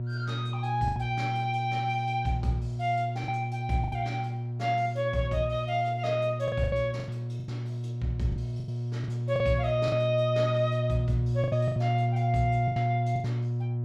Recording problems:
electrical hum; 60 Hz, harmonics up to 600 Hz, SNR 1 dB
lost packets; 7% of the sound replaced, filled with the last packet

